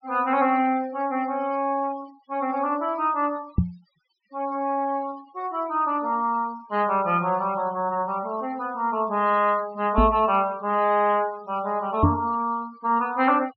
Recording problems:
treble missing; nothing above 5.5 kHz
denoising artefacts; signal-to-artefact ratio 23 dB
microphone bump; at 3.5 s, at 10 s and at 12 s; peak +8 dB vs average level

